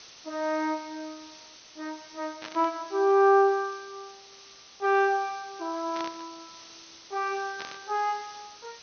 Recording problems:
treble cut off; nothing above 6.3 kHz
hiss; slope +1 dB per octave, SNR 20 dB
burst of static; at 2.5 s, at 6 s and at 7.5 s; peak -8 dB vs average level

